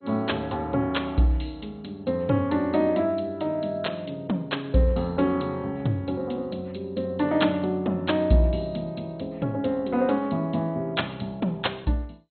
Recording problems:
lossy codec; MP2, log-spectral distance 5 dB, nothing above 4.2 kHz

